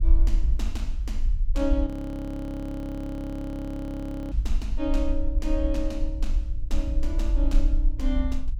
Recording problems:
low-frequency rumble; below 44 Hz, SNR -2 dB
audio freezing; at 2 s for 2.5 s

